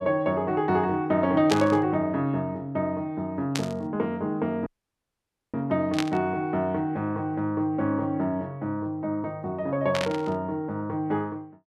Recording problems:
static burst; 4 times, first at 1.5 s; peak +3 dB vs average level
dropout; at 4.5 s for 1 s

